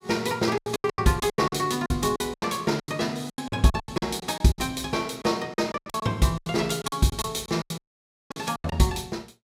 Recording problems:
packet loss; 19% of the sound replaced, filled with silence
dropout; at 8 s for 0.5 s

